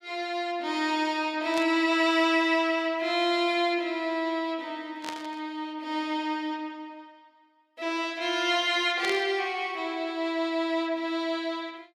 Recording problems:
burst of static; at 1.5 s, at 5 s and at 9 s; peak -4 dB vs average level

